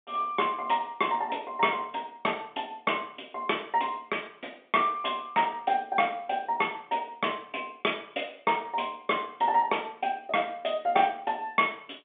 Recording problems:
phone line; 220 Hz to 3.5 kHz, G.711

